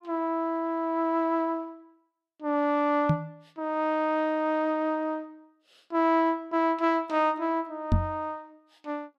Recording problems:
microphone bump; at 3 s and at 8 s; peak +7 dB vs average level

